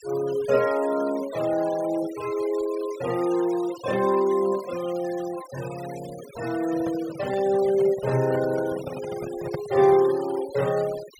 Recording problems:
noise reduction artefacts; signal-to-artefact ratio 17 dB
handling noise; from 6.5 to 10 s; peak -3 dB vs average level

